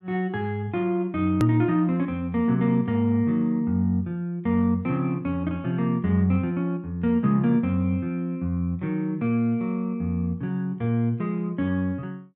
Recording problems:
click at an edit; at 1.5 s

